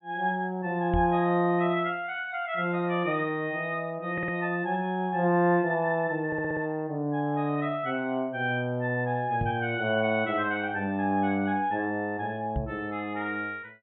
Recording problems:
treble missing; nothing above 3.7 kHz
microphone thump; at 1 s, at 9.5 s and at 13 s; peak +1 dB vs average level
audio stuttering; at 4 s and at 6.5 s

